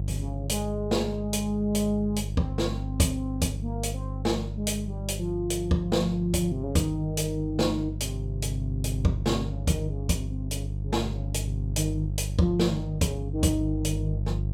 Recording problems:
hum; 50 Hz, harmonics up to 350 Hz, SNR 4 dB

